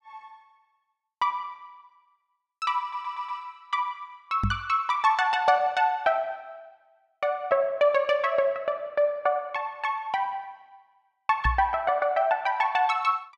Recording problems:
audio stuttering; at 3 s
microphone thump; at 4.5 s and at 11 s; peak +2 dB vs average level

